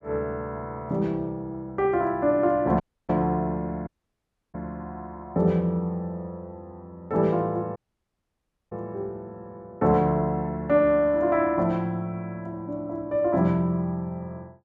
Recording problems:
dropout; at 3 s, at 4 s for 0.5 s and at 8 s for 1 s

